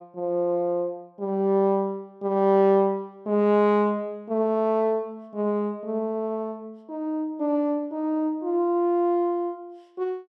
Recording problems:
none

